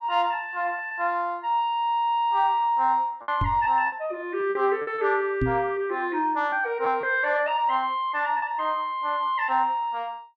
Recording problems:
lost packets; 4% of the sound replaced, filled with repeated pitch periods
microphone bump; at 3.5 s and at 5.5 s; peak +2 dB vs average level

